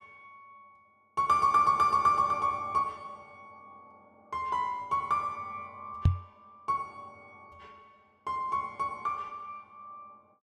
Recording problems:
knock on the microphone; at 6 s; peak +9 dB vs average level

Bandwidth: 14 kHz